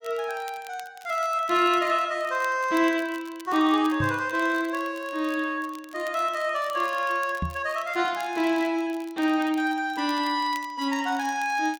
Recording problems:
crackle; vinyl, SNR 23 dB
microphone thump; at 4 s and at 7.5 s; peak 0 dB vs average level

